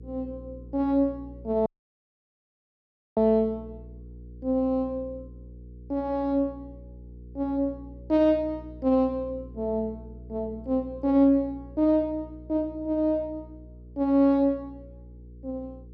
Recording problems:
electrical hum; 60 Hz, harmonics up to 480 Hz, SNR 19 dB
dropout; at 1.5 s for 1.5 s

